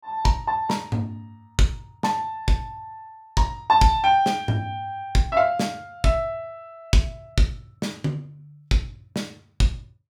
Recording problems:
none

